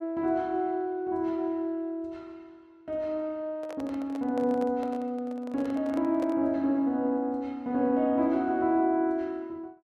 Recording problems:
handling noise; from 3.5 to 6.5 s; peak -7 dB vs average level

